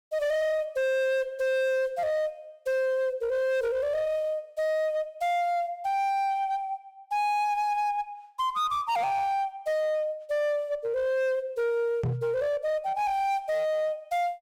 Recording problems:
distortion; hard clipping, uneven, signal-to-distortion ratio 10 dB
knock on the microphone; at 12 s; peak +2 dB vs average level

